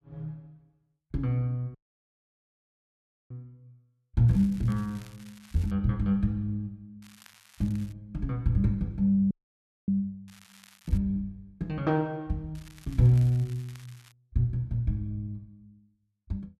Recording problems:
dropout; at 2 s for 1.5 s and at 9.5 s for 0.5 s
crackling; 4 times, first at 4.5 s; loose cable, SNR 25 dB

